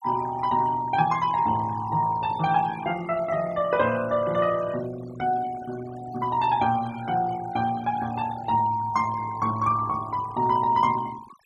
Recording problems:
denoising artefacts; signal-to-artefact ratio 17 dB

